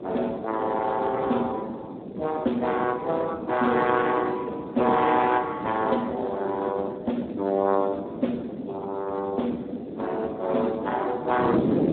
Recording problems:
telephone audio; 190 Hz to 2.6 kHz, Speex
wind noise; below 440 Hz, SNR 8 dB

